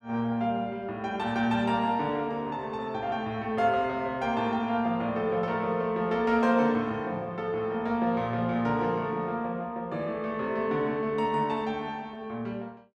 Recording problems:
none

